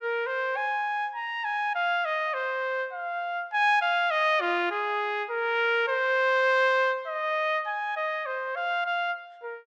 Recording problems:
none

